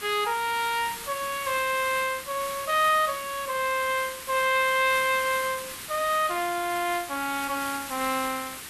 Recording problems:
background hiss; SNR 10 dB

